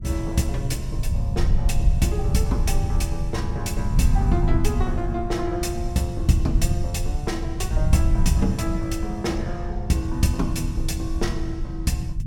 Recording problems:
low-frequency rumble; below 94 Hz, SNR 0 dB

